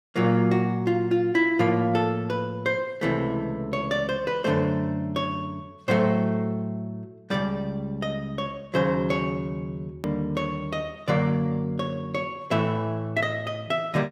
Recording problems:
edit click; at 10 s

